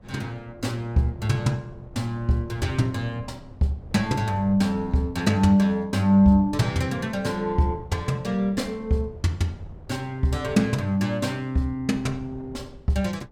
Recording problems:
wind noise; below 190 Hz, SNR 21 dB

